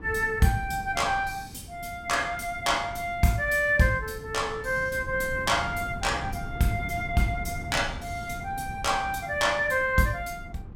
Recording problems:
wind on the microphone; below 190 Hz, SNR 14 dB

